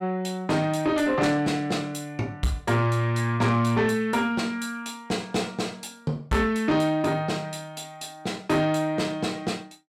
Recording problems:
distortion; soft clipping, signal-to-distortion ratio 11 dB

